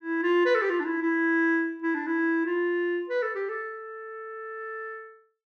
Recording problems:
none

